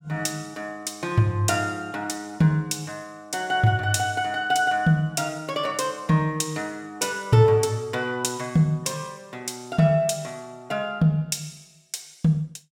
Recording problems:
none

